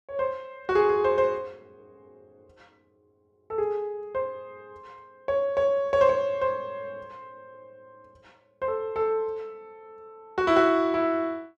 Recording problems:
none

